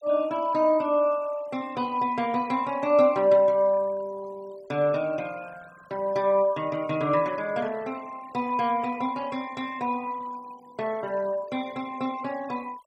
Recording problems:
noise reduction artefacts; signal-to-artefact ratio 24 dB

